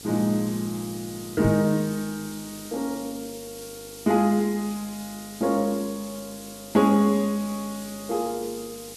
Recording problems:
electrical hum; 50 Hz, harmonics up to 1.3 kHz, SNR 24 dB
background hiss; SNR 15 dB
knock on the microphone; at 1.5 s; peak +3 dB vs average level

